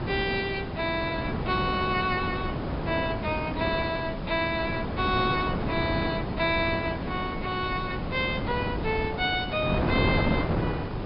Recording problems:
treble missing; nothing above 5.5 kHz
hiss; SNR 19 dB
wind noise; below 590 Hz, SNR 2 dB

